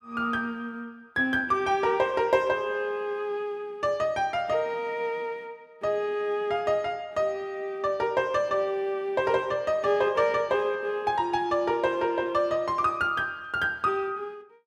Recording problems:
none

